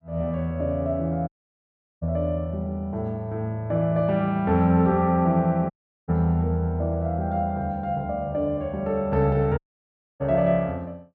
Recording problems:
dropout; at 1.5 s for 0.5 s, at 5.5 s and at 9.5 s for 0.5 s

